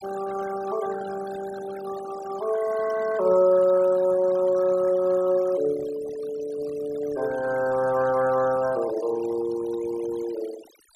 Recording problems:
denoising artefacts; signal-to-artefact ratio 16 dB

